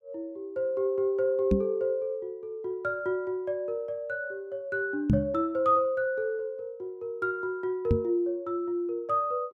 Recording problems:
knock on the microphone; at 1.5 s, at 5 s and at 8 s; peak +9 dB vs average level

